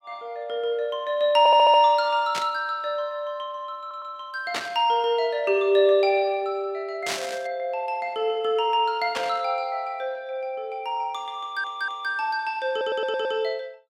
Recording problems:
stutter; 4 times, first at 1.5 s
static burst; 4 times, first at 2.5 s; peak 0 dB vs average level

